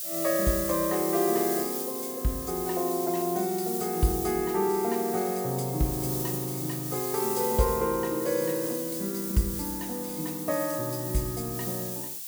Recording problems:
hiss; SNR 4 dB

